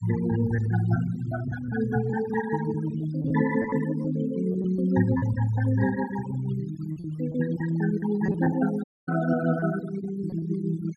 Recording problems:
denoising artefacts; signal-to-artefact ratio 16 dB
packet loss; 5% of the sound replaced, filled with repeated pitch periods
audio cutting out; at 9 s

